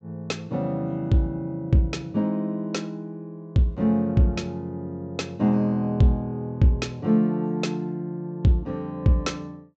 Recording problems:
low-pass filter; nothing above 8 kHz

